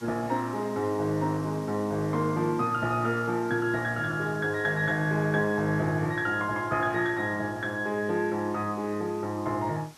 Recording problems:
background hiss; SNR 23 dB

